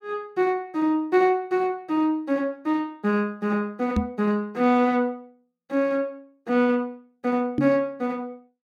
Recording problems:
microphone thump; at 4 s and at 7.5 s; peak +5 dB vs average level

